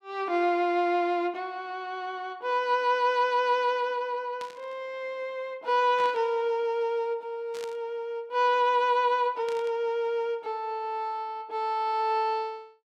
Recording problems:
burst of static; 4 times, first at 4.5 s; peak -10 dB vs average level

